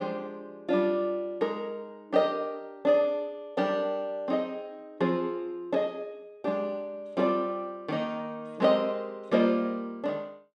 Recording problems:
none

